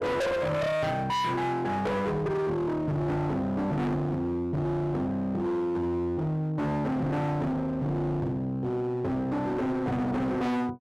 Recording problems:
distorted audio; hard clipping, uneven, signal-to-distortion ratio 6 dB

